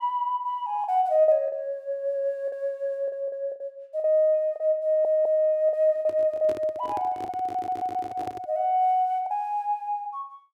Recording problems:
packet loss; 7% of the sound replaced, filled with the last packet
audio stuttering; at 5 s and at 7.5 s
handling noise; from 6 to 8.5 s; peak -9 dB vs average level

